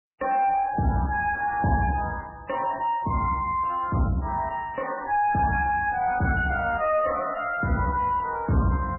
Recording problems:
lossy codec; MP3, log-spectral distance 4 dB, nothing above 2.5 kHz
distorted audio; soft clipping, signal-to-distortion ratio 10 dB

